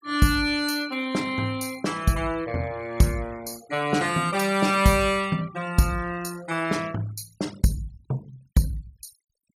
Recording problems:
noise reduction artefacts; signal-to-artefact ratio 20 dB

